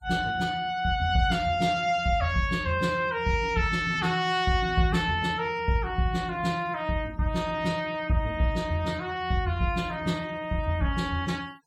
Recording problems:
noise reduction artefacts; signal-to-artefact ratio 23 dB

